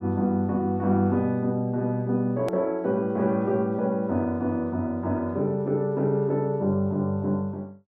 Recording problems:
click at an edit; at 2.5 s

